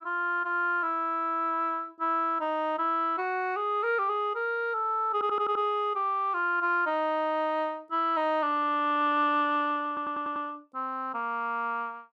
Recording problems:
stutter; at 5 s and at 10 s

